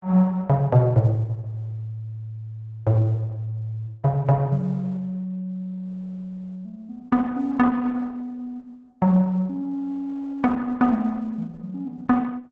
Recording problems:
lossy codec; Opus, log-spectral distance 2 dB

